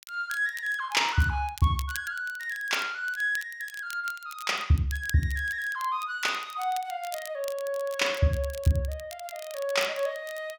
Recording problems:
crackling; vinyl, SNR 16 dB

